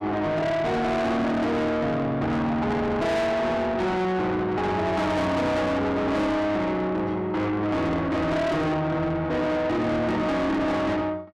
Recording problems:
distorted audio; soft clipping, signal-to-distortion ratio 7 dB

